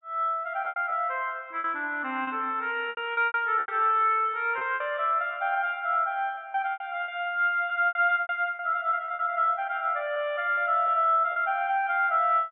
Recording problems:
treble cut off; nothing above 3.4 kHz
packet loss; 9% of the sound replaced, filled with repeated pitch periods

